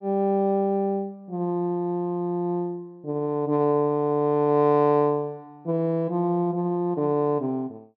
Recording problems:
low-pass filter; nothing above 7.2 kHz

